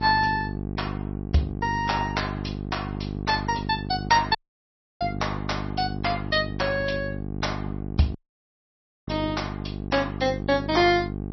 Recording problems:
lossy codec; MP3, log-spectral distance 3 dB, nothing above 5.8 kHz
hum; 50 Hz, harmonics up to 850 Hz, SNR 6 dB
dropout; at 4.5 s for 0.5 s and at 8 s for 1 s

